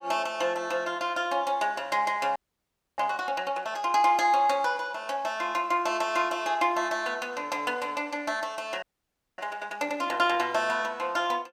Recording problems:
audio freezing; at 2.5 s for 0.5 s and at 9 s for 0.5 s

